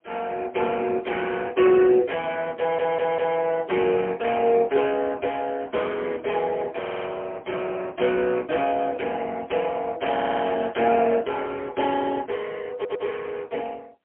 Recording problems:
telephone audio; 260 Hz to 3.2 kHz, AMR-NB, then MP3
stutter; 4 times, first at 2.5 s

